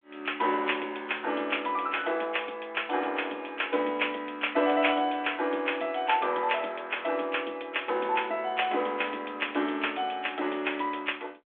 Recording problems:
phone line; 300 Hz to 3.5 kHz, G.726

